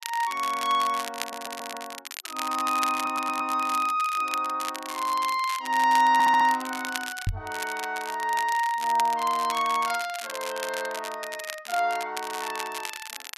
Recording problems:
crackle; vinyl, SNR 11 dB
audio stuttering; at 1 s, at 3 s and at 6 s
knock on the microphone; at 7.5 s; peak +2 dB vs average level

